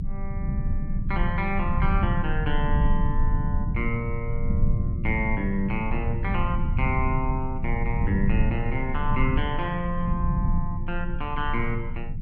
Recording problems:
rumble; below 110 Hz, strongest tone 20 Hz, SNR -1 dB

